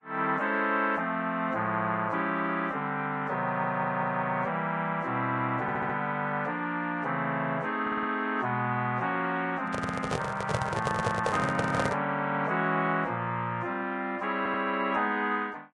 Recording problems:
lossy compression; Vorbis, log-spectral distance 2 dB
audio stuttering; 4 times, first at 3.5 s
handling noise; from 9.5 to 12 s; peak +4 dB vs average level

